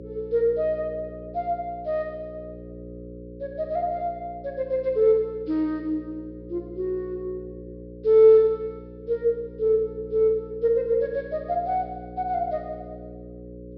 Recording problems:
treble missing; nothing above 5.5 kHz
hum; 60 Hz, harmonics up to 540 Hz, SNR 17 dB

